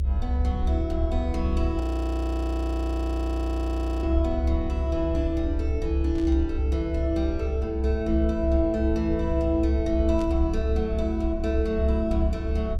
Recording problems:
hum; 50 Hz, harmonics up to 600 Hz, SNR 19 dB
rumble; below 70 Hz, strongest tone 68 Hz, SNR 0 dB
audio freezing; at 2 s for 2 s
burst of static; at 6 s and at 10 s; peak -12 dB vs average level

